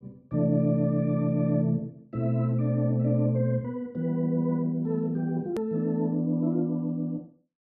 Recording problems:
click at an edit; at 5.5 s

